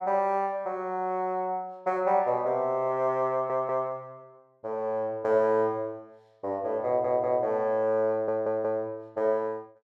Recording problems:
audio stuttering; at 3.5 s, at 7 s and at 8 s

